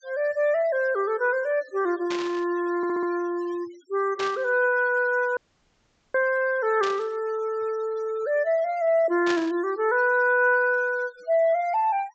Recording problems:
treble missing; nothing above 8 kHz
noise reduction artefacts; signal-to-artefact ratio 26 dB
burst of static; 4 times, first at 2 s; peak -3 dB vs average level
stutter; at 3 s
dropout; at 5.5 s for 1 s

